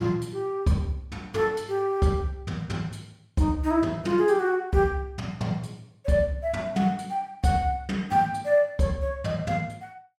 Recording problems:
none

